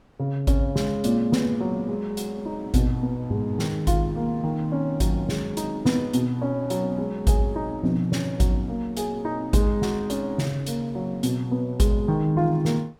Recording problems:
wind on the microphone; below 750 Hz, SNR 26 dB

